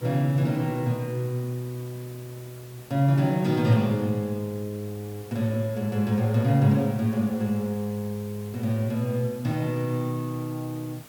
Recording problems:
hiss; slope -3 dB per octave, SNR 21 dB

